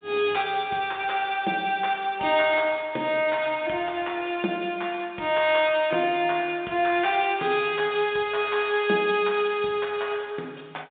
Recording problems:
phone line; 220 Hz to 3.7 kHz, G.726

